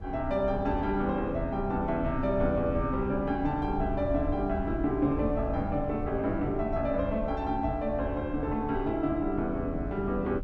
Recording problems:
low-frequency rumble; below 100 Hz, SNR 9 dB

